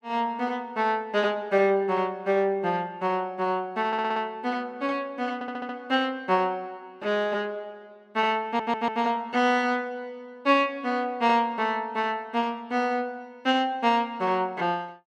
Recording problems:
audio stuttering; at 4 s, at 5.5 s and at 8.5 s

